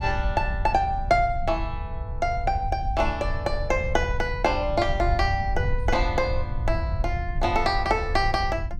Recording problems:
rumble; below 82 Hz, SNR 5 dB

